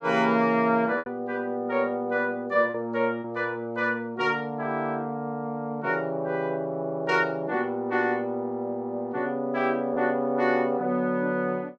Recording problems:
lost packets; 1.5% of the sound replaced, filled with repeated pitch periods

